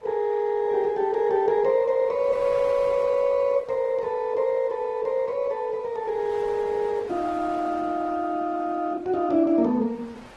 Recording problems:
lossy compression; Vorbis, then Opus, log-spectral distance 2 dB
wind noise; below 1.9 kHz, SNR 25 dB

